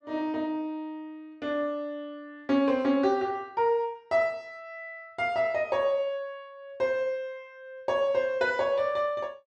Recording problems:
none

